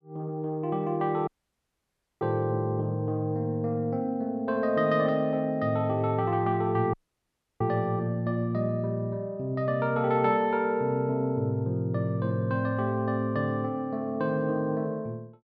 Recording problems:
dropout; at 1.5 s for 1 s and at 7 s for 0.5 s

